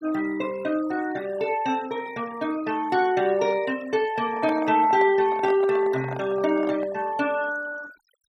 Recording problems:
noise reduction artefacts; signal-to-artefact ratio 20 dB
microphone handling noise; from 4 to 7 s; peak -6 dB vs average level

